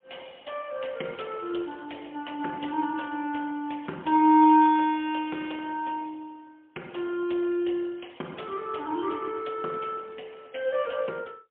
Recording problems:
telephone audio; 220 Hz to 3.4 kHz, AMR-NB, then MP3

